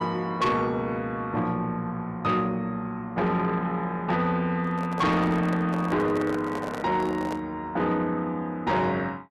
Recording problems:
distortion; soft clipping, signal-to-distortion ratio 11 dB
handling noise; from 4.5 to 7.5 s; peak -3 dB vs average level

